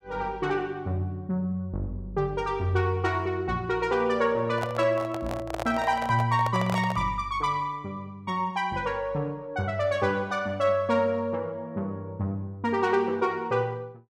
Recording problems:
handling noise; from 4.5 to 7 s; peak -1 dB vs average level

